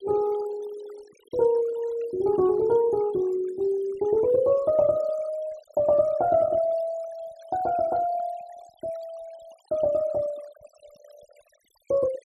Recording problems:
noise reduction artefacts; signal-to-artefact ratio 23 dB

